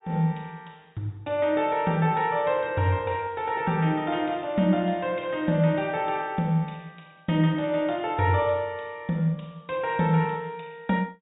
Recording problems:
treble cut off; nothing above 4 kHz

